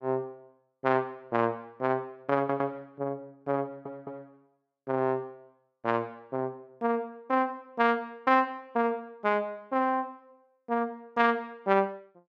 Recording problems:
audio stuttering; at 2.5 s and at 3.5 s

